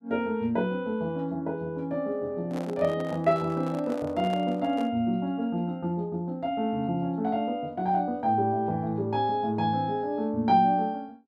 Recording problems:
microphone handling noise; from 2.5 to 5 s; peak -8 dB vs average level

